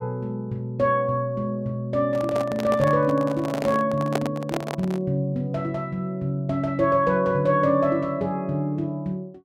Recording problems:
microphone handling noise; from 2 to 5 s; peak +3 dB vs average level

